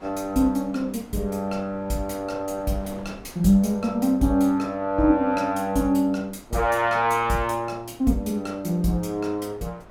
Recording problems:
wind on the microphone; below 830 Hz, SNR 24 dB

